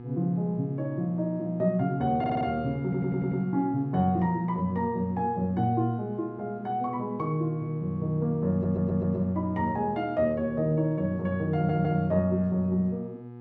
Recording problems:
hum; 60 Hz, harmonics up to 1.2 kHz, SNR 14 dB
stutter; 4 times, first at 2 s

